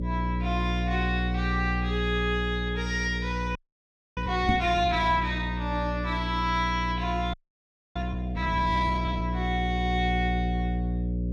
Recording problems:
electrical hum; 60 Hz, harmonics up to 540 Hz, SNR 2 dB
audio freezing; at 3.5 s for 0.5 s and at 7.5 s for 0.5 s
microphone thump; at 4.5 s; peak +7 dB vs average level

